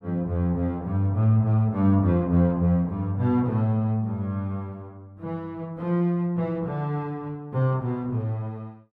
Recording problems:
none

